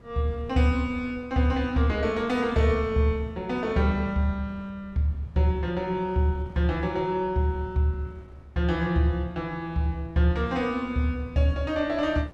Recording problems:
wind on the microphone; below 340 Hz, SNR 24 dB

